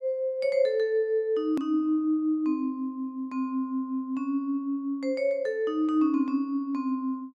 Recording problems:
click at an edit; at 1.5 s

